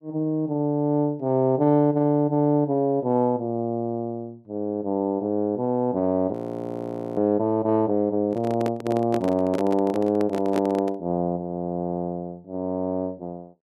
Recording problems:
frozen audio; at 6.5 s for 1 s
handling noise; from 8.5 to 11 s; peak -1 dB vs average level

